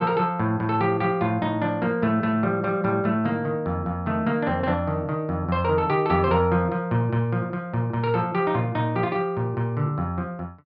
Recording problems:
low-pass filter; nothing above 5.5 kHz

